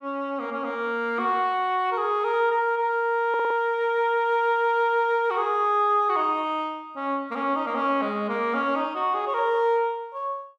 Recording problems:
stutter; at 3.5 s

